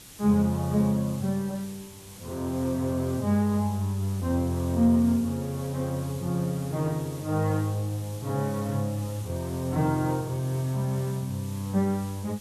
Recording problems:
background hiss; SNR 18 dB

